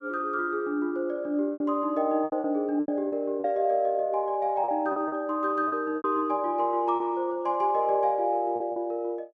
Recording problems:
lost packets; 8% of the sound replaced, filled with repeated pitch periods

